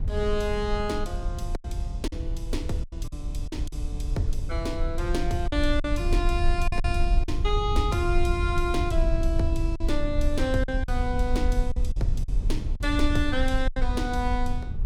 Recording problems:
rumble; below 60 Hz, SNR 0 dB
lost packets; 6% of the sound replaced, filled with silence

